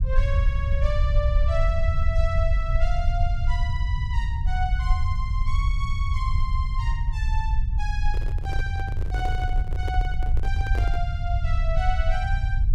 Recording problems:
low-frequency rumble; below 74 Hz, SNR -7 dB
microphone handling noise; from 8 to 11 s; peak +1 dB vs average level

